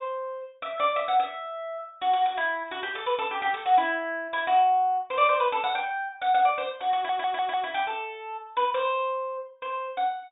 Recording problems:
treble missing; nothing above 4 kHz
audio stuttering; at 7 s

